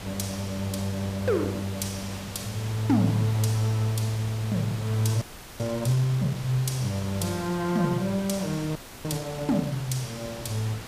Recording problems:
hiss; slope -3 dB per octave, SNR 12 dB
frozen audio; at 5 s and at 9 s

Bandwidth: 15 kHz